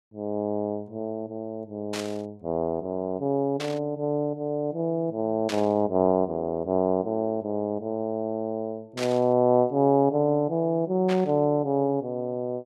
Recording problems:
burst of static; 5 times, first at 2 s; peak -3 dB vs average level

